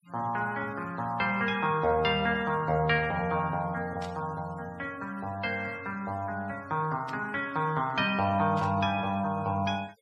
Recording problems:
noise reduction artefacts; signal-to-artefact ratio 25 dB
static burst; at 4 s, at 7 s and at 8.5 s; peak -12 dB vs average level

